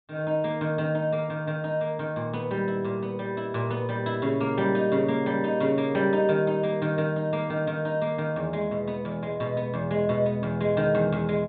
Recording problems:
low-pass filter; nothing above 4 kHz

